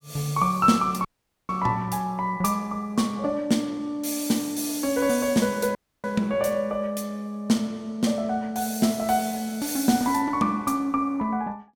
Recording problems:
dropout; at 1 s and at 6 s

